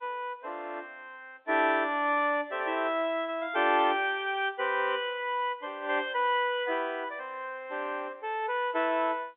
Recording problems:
telephone audio; 280 Hz to 3.6 kHz, G.711

